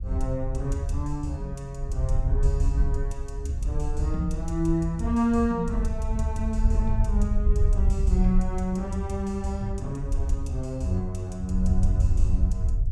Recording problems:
rumble; below 68 Hz, SNR 0 dB

